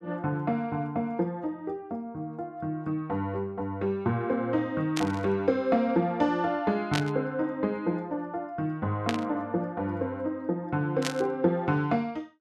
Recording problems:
static burst; 4 times, first at 5 s; peak +3 dB vs average level

